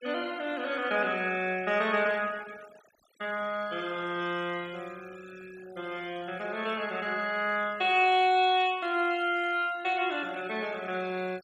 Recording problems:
noise reduction artefacts; signal-to-artefact ratio 22 dB

